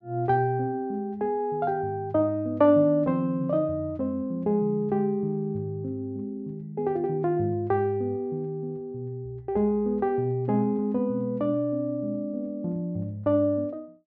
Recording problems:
none

